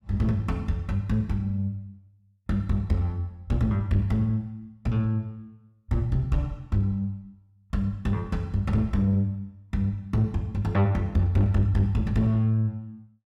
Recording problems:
distorted audio; soft clipping, signal-to-distortion ratio 11 dB

